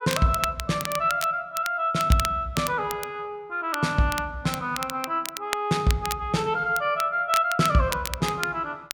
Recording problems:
crackle; vinyl, SNR 10 dB

